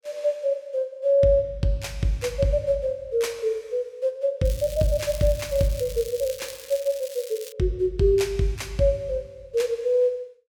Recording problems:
crackling; from 4.5 to 7.5 s; loose cable, SNR 16 dB

